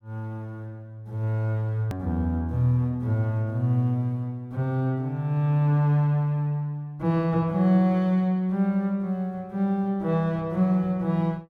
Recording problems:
hard cut with a click; at 2 s

